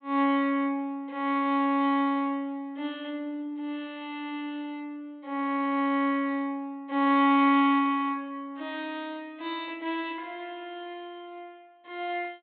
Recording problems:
treble cut off; nothing above 4 kHz

